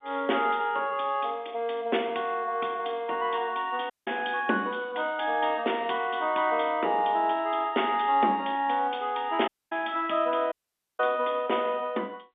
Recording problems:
telephone audio; 240 Hz to 3.6 kHz, G.711
dropout; at 4 s, at 9.5 s and at 11 s

